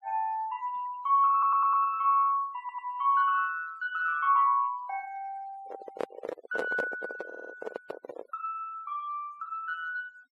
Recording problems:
noise reduction artefacts; signal-to-artefact ratio 24 dB
audio stuttering; at 1.5 s, at 2.5 s and at 7.5 s
handling noise; from 5.5 to 8.5 s; peak 0 dB vs average level

